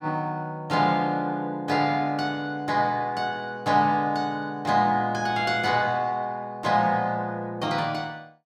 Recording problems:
none

